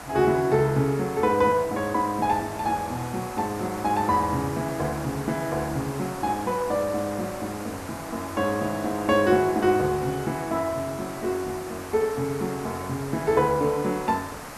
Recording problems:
hiss; SNR 12 dB

